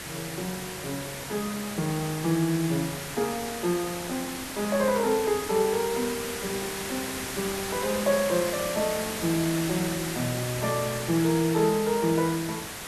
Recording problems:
hiss; slope -2 dB per octave, SNR 6 dB

